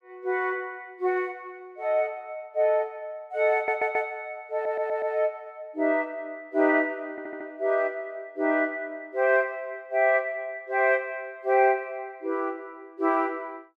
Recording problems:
stutter; at 3.5 s, at 4.5 s and at 7 s

